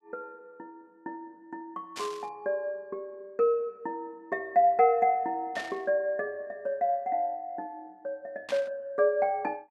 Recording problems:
burst of static; at 2 s, at 5.5 s and at 8.5 s; peak -6 dB vs average level

